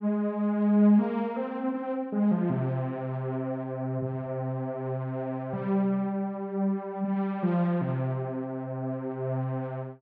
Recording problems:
none

